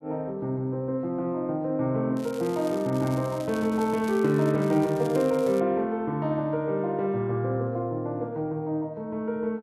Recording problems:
crackle; from 2 to 5.5 s; loose cable, SNR 20 dB

